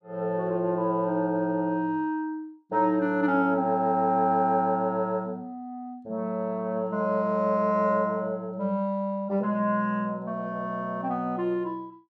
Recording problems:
none

